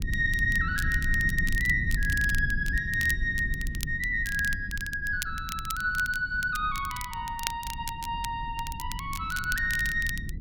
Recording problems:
rumble; below 100 Hz, SNR 8 dB
crackle; vinyl, SNR 12 dB

